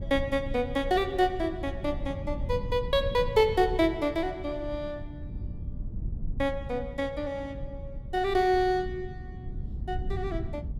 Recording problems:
rumble; below 110 Hz, SNR 10 dB

